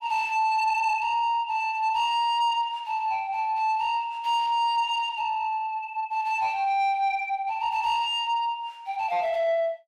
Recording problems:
distorted audio; soft clipping, signal-to-distortion ratio 11 dB

